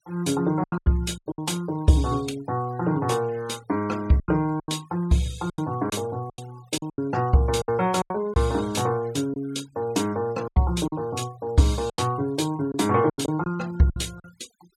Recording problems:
denoising artefacts; signal-to-artefact ratio 23 dB
packet loss; 10% of the sound replaced, filled with silence

